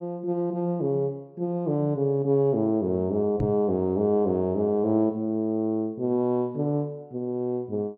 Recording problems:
knock on the microphone; at 3.5 s; peak +1 dB vs average level

